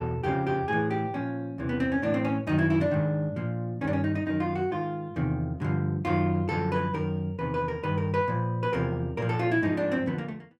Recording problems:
none

